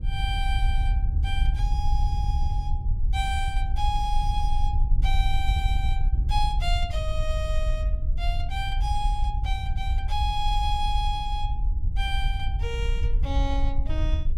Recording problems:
wind on the microphone; below 62 Hz, SNR -5 dB

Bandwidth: 16 kHz